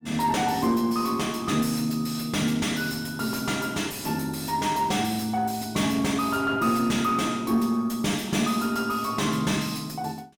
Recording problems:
distorted audio; soft clipping, signal-to-distortion ratio 10 dB

